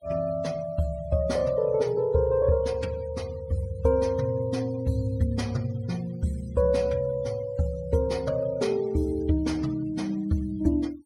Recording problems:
noise reduction artefacts; signal-to-artefact ratio 24 dB

